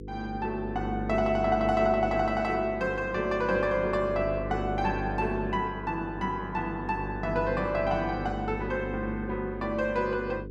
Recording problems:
electrical hum; 50 Hz, harmonics up to 500 Hz, SNR 8 dB

